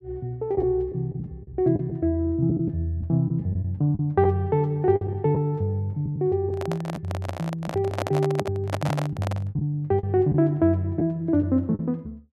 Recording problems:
lost packets; 6% of the sound replaced, filled with the last packet
handling noise; from 6.5 to 9.5 s; peak +1 dB vs average level

